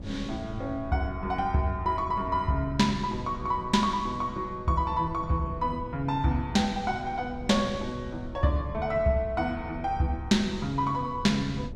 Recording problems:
wind on the microphone; below 170 Hz, SNR 14 dB

